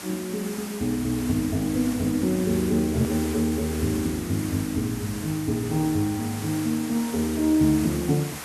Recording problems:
hiss; slope -2 dB per octave, SNR 11 dB
click at an edit; at 3 s

